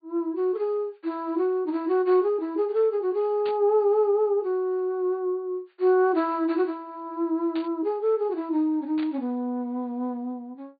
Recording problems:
low-pass filter; nothing above 4.6 kHz
static burst; at 3.5 s, at 7.5 s and at 9 s; peak -11 dB vs average level

